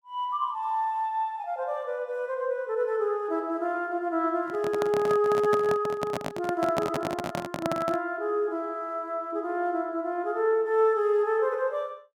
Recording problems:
handling noise; from 4.5 to 8 s; peak +2 dB vs average level

